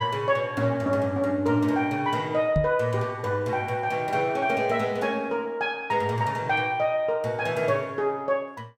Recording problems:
knock on the microphone; at 2.5 s; peak +3 dB vs average level

